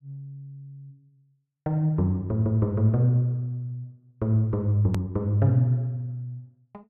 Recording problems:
edit click; at 5 s

